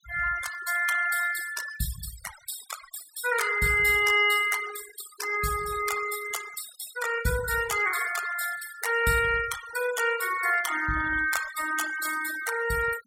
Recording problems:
noise reduction artefacts; signal-to-artefact ratio 10 dB

